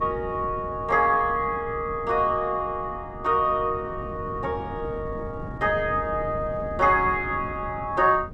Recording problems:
wind on the microphone; below 250 Hz, SNR 13 dB

